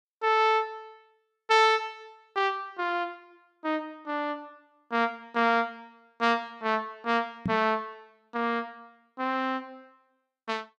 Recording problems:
microphone thump; at 7.5 s; peak +2 dB vs average level

